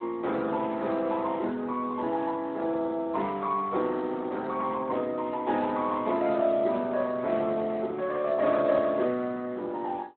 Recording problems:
phone line; 260 Hz to 3.8 kHz, Speex

